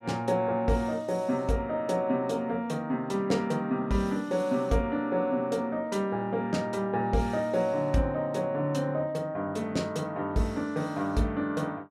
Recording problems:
none

